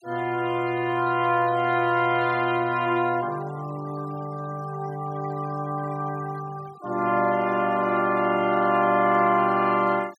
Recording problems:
denoising artefacts; signal-to-artefact ratio 22 dB

